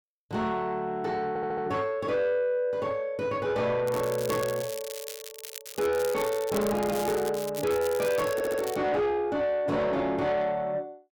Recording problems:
distorted audio; soft clipping, signal-to-distortion ratio 11 dB
audio stuttering; at 1.5 s and at 8.5 s
crackle; from 4 to 9 s; loose cable, SNR 12 dB

